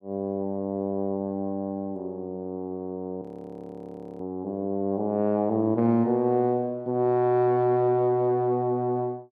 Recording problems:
frozen audio; at 3 s for 1 s

